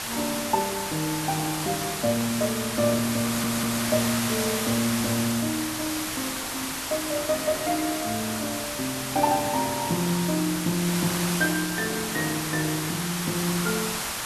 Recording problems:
background hiss; SNR 1 dB
audio stuttering; at 3.5 s

